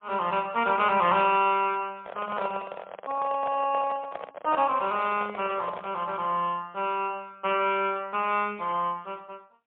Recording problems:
telephone audio; 240 Hz to 3.5 kHz, AMR-NB, then MP3
handling noise; from 2 to 6 s; peak -1 dB vs average level

